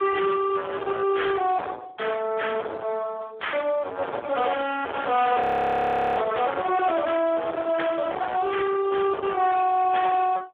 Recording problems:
phone line; 300 Hz to 3.4 kHz, Speex
distortion; soft clipping, signal-to-distortion ratio 5 dB
crackle; at 4.5 s, at 5 s and from 6.5 to 8.5 s; loose cable, SNR 22 dB
frozen audio; at 5.5 s for 1 s

